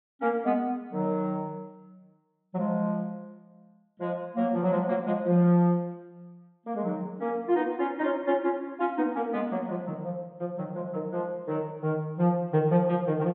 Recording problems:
treble missing; nothing above 4 kHz

